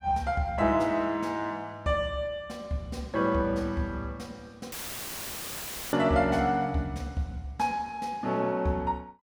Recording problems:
audio cutting out; at 4.5 s for 1 s; filled with static

